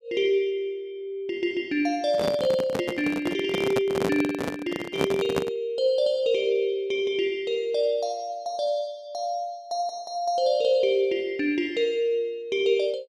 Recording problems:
microphone handling noise; from 2 to 5.5 s; peak +3 dB vs average level

